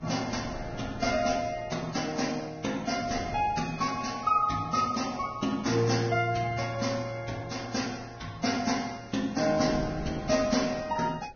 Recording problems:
lossy codec; Vorbis, log-spectral distance 5 dB, nothing above 6.3 kHz
wind on the microphone; below 450 Hz, SNR 16 dB

